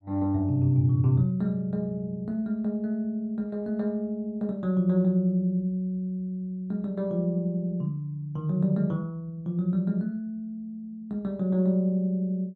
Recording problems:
none

